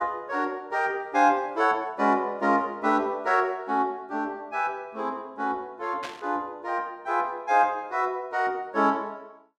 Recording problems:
static burst; at 6 s; peak -5 dB vs average level

